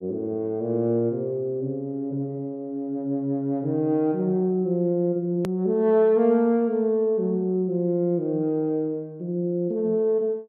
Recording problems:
click at an edit; at 5.5 s

